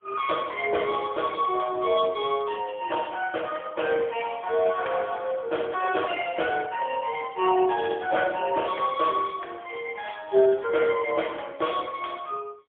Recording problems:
telephone audio; 340 Hz to 3.3 kHz, AMR-NB, then MP3

